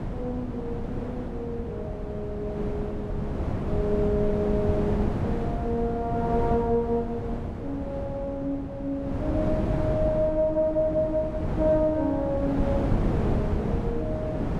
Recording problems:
wind noise; below 330 Hz, SNR 2 dB

